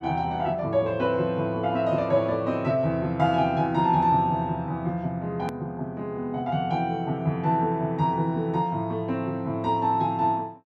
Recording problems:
click at an edit; at 5.5 s

